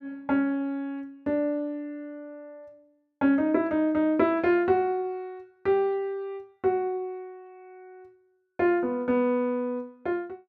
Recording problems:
none

